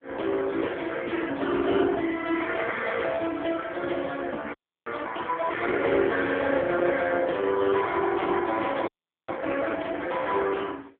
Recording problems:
phone line; 280 Hz to 3.4 kHz, AMR-NB
audio freezing; at 4.5 s and at 9 s

